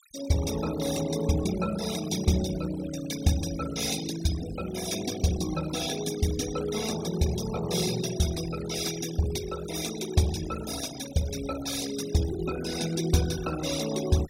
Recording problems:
noise reduction artefacts; signal-to-artefact ratio 11 dB

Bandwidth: 16 kHz